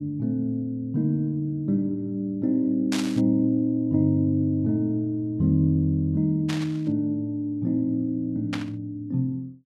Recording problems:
burst of static; at 3 s, at 6.5 s and at 8.5 s; peak -3 dB vs average level

